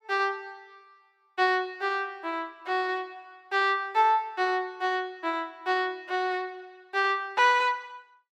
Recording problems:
none

